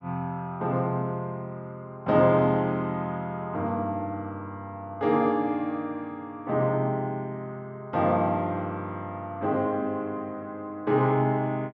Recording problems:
none

